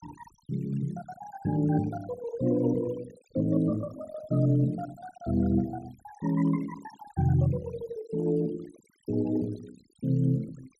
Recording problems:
noise reduction artefacts; signal-to-artefact ratio 22 dB

